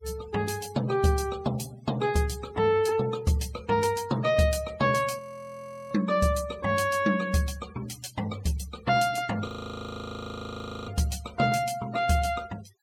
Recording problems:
noise reduction artefacts; signal-to-artefact ratio 21 dB
audio freezing; at 5 s for 0.5 s and at 9.5 s for 1.5 s

